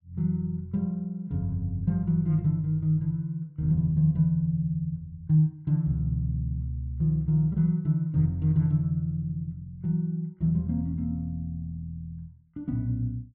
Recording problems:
none

